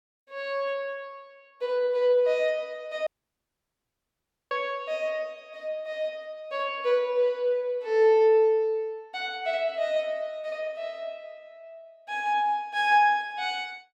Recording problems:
dropout; at 3 s for 1.5 s

